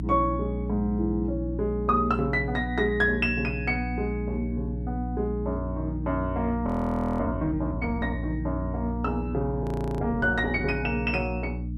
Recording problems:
hum; 60 Hz, harmonics up to 300 Hz, SNR 5 dB
frozen audio; at 6.5 s for 0.5 s and at 9.5 s

